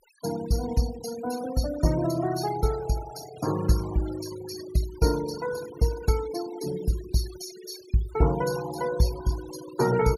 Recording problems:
noise reduction artefacts; signal-to-artefact ratio 13 dB

